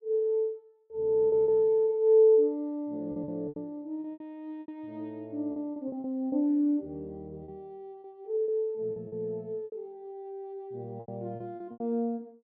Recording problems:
lost packets; 10% of the sound replaced, filled with repeated pitch periods

